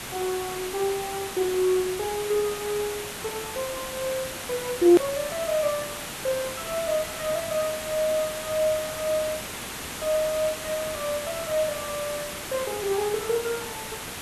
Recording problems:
hiss; slope -2 dB per octave, SNR 6 dB
hard cut with a click; at 5 s

